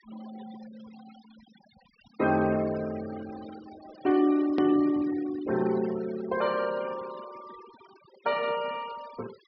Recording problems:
low-pass filter; nothing above 5.5 kHz
denoising artefacts; signal-to-artefact ratio 19 dB
hard cut with a click; at 4.5 s

